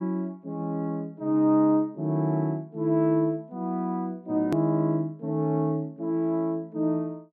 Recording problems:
hard cut with a click; at 4.5 s

